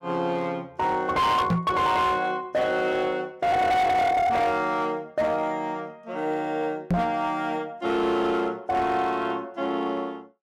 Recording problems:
distortion; hard clipping, signal-to-distortion ratio 10 dB
microphone bump; at 1.5 s and at 7 s; peak +4 dB vs average level

